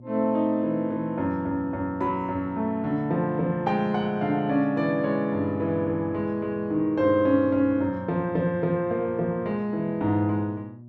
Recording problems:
hum; 60 Hz, harmonics up to 600 Hz, SNR 19 dB

